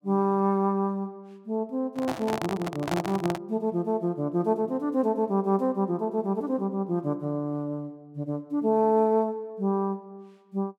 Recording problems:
microphone handling noise; from 2 to 3.5 s; peak 0 dB vs average level

